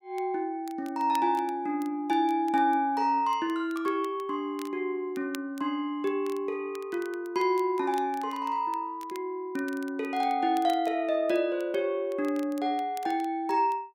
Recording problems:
crackling; vinyl, SNR 24 dB

